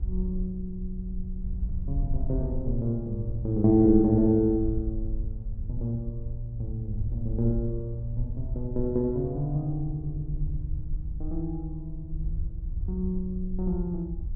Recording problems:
rumble; below 64 Hz, SNR 7 dB

